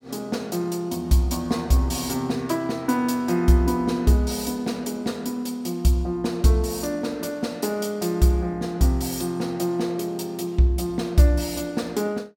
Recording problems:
none

